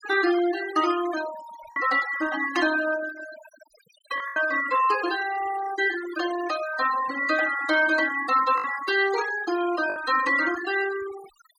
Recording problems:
noise reduction artefacts; signal-to-artefact ratio 13 dB
packet loss; 2% of the sound replaced, filled with the last packet

